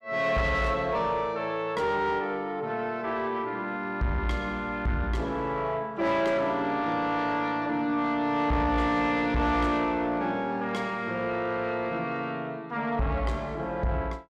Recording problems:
distortion; soft clipping, signal-to-distortion ratio 11 dB

